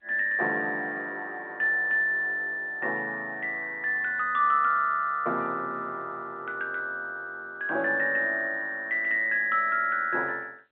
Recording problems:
phone line; 280 Hz to 3.4 kHz, G.711

